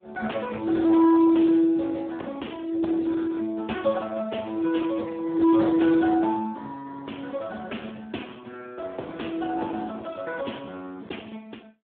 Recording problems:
phone line; 190 Hz to 3.9 kHz, Speex
distorted audio; hard clipping, signal-to-distortion ratio 12 dB

